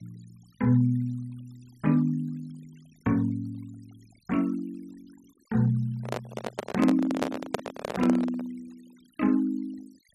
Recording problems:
noise reduction artefacts; signal-to-artefact ratio 27 dB
microphone handling noise; from 6 to 8.5 s; peak +3 dB vs average level

